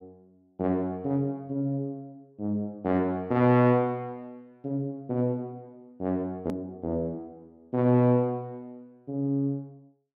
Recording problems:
click at an edit; at 6.5 s

